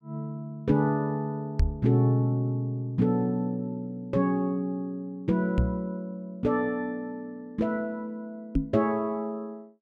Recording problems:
microphone bump; at 1.5 s, at 5.5 s and at 8.5 s; peak +6 dB vs average level

